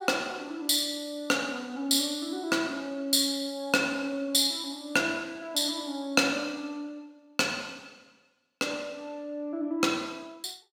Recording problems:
none

